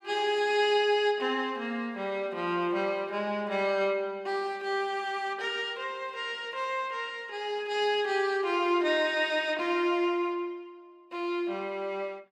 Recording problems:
none

